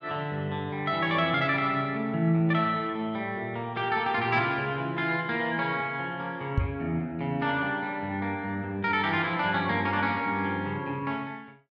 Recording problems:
microphone bump; at 6.5 s; peak +5 dB vs average level

